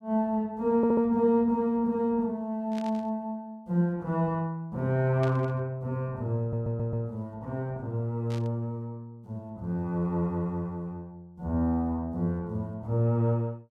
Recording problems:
audio stuttering; at 1 s and at 6.5 s
static burst; at 2.5 s, at 5 s and at 8.5 s; peak -10 dB vs average level

